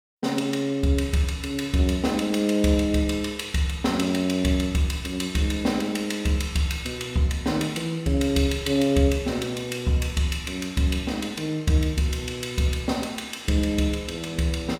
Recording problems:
none

